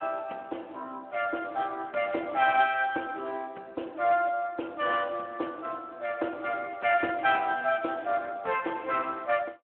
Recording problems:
phone line; 260 Hz to 3.1 kHz, Speex

